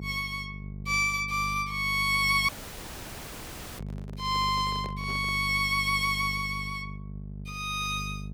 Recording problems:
electrical hum; 50 Hz, harmonics up to 450 Hz, SNR 12 dB
audio cutting out; at 2.5 s for 1.5 s
microphone handling noise; from 4 to 5.5 s; peak -10 dB vs average level

